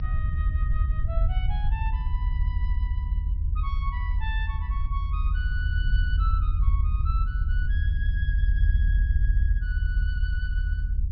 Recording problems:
low-pass filter; nothing above 5.7 kHz
low-frequency rumble; below 76 Hz, strongest tone 42 Hz, SNR -12 dB

